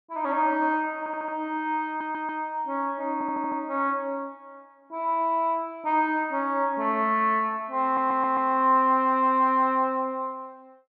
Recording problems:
stutter; 4 times, first at 1 s

